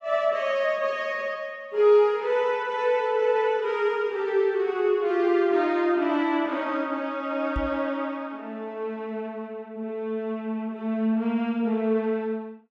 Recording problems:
microphone thump; at 7.5 s; peak -2 dB vs average level

